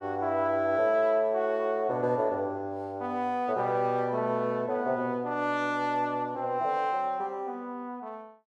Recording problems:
none

